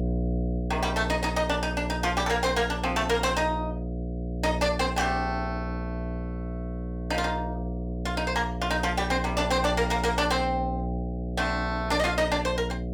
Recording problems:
distortion; soft clipping, signal-to-distortion ratio 11 dB
hum; 60 Hz, harmonics up to 720 Hz, SNR 5 dB

